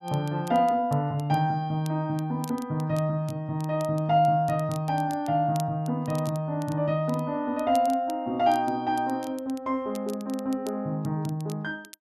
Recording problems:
crackling; vinyl, SNR 23 dB

